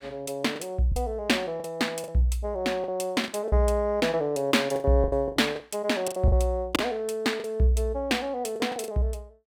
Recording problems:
packet loss; 10% of the sound replaced, filled with the last packet

